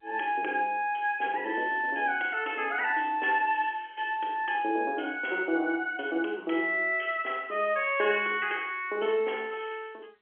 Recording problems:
phone line; 280 Hz to 3.3 kHz, G.711

